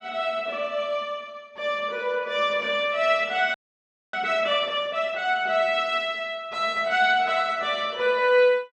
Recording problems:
audio freezing; at 3.5 s for 0.5 s

